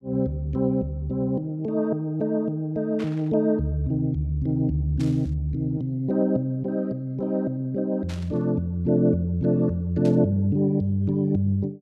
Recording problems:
burst of static; 4 times, first at 3 s; peak -12 dB vs average level

